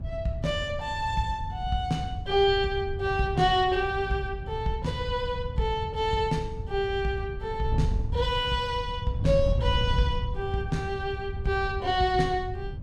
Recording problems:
wind on the microphone; below 110 Hz, SNR 6 dB

